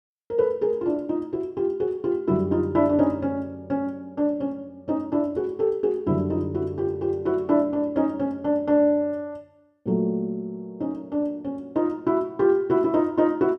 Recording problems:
none

